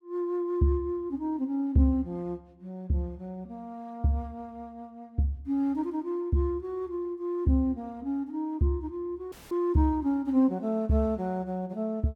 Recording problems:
dropout; at 9.5 s; filled with static

